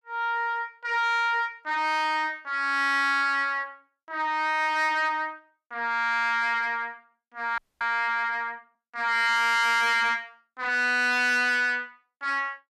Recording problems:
distortion; soft clipping, signal-to-distortion ratio 11 dB
frozen audio; at 7.5 s

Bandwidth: 14.5 kHz